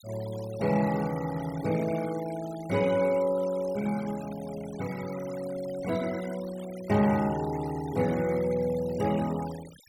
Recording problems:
denoising artefacts; signal-to-artefact ratio 17 dB

